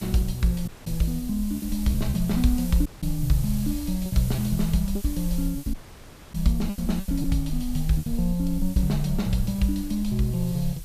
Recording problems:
background hiss; slope +1 dB per octave, SNR 15 dB
rumble; below 50 Hz, SNR 10 dB
lost packets; 7% of the sound replaced, filled with repeated pitch periods
audio cutting out; at 0.5 s, at 3 s and at 5.5 s for 0.5 s

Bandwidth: 14.5 kHz